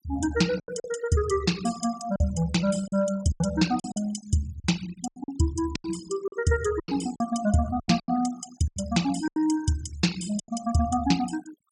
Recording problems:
noise reduction artefacts; signal-to-artefact ratio 14 dB
packet loss; 10% of the sound replaced, filled with silence

